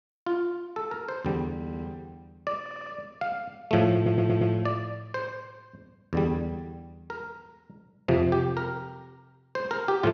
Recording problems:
audio stuttering; at 1.5 s, at 2.5 s and at 4 s

